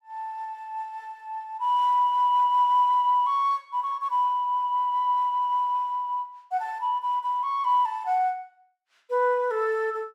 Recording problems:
none

